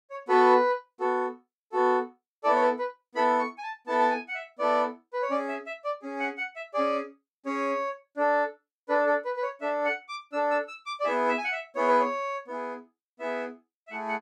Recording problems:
none

